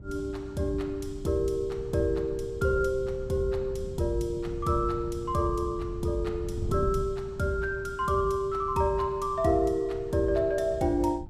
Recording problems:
wind on the microphone; below 140 Hz, SNR 12 dB

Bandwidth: 15 kHz